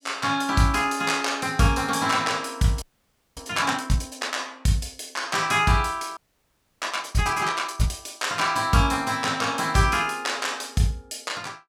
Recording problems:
audio freezing; at 3 s for 0.5 s and at 6 s for 0.5 s

